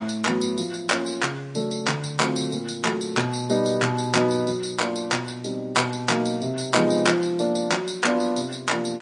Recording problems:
lossy compression; MP3, log-spectral distance 3 dB, nothing above 8.7 kHz

